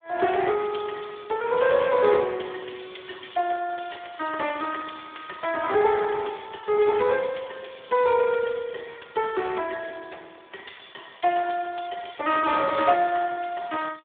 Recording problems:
telephone audio; 320 Hz to 3.5 kHz, Speex

